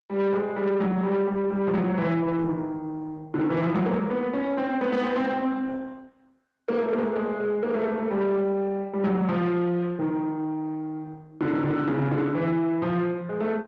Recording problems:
lossy compression; Opus, log-spectral distance 2 dB
distorted audio; soft clipping, signal-to-distortion ratio 11 dB

